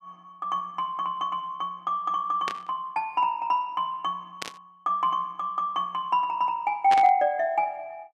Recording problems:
static burst; at 2.5 s, at 4.5 s and at 7 s; peak 0 dB vs average level

